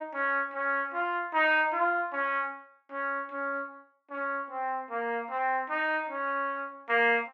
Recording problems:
none

